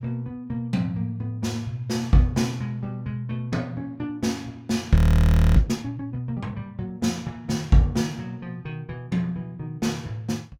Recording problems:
frozen audio; at 5 s for 0.5 s

